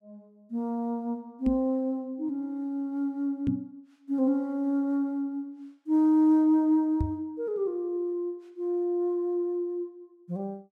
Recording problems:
knock on the microphone; at 1.5 s, at 3.5 s and at 7 s; peak +3 dB vs average level

